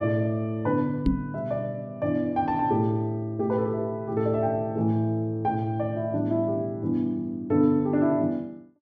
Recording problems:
knock on the microphone; at 1 s; peak +7 dB vs average level

